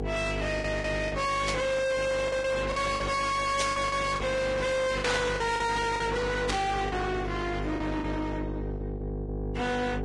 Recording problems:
lossy compression; Vorbis, log-spectral distance 3 dB, nothing above 10.4 kHz
distorted audio; soft clipping, signal-to-distortion ratio 5 dB
mains hum; 50 Hz, harmonics up to 1.4 kHz, SNR 5 dB
packet loss; 8% of the sound replaced, filled with the last packet
burst of static; 4 times, first at 1.5 s; peak +1 dB vs average level

